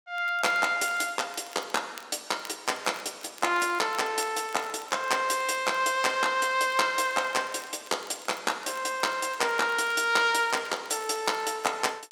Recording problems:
crackle; vinyl, SNR 23 dB

